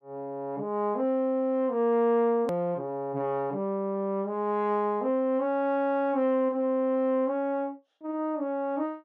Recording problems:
click at an edit; at 2.5 s

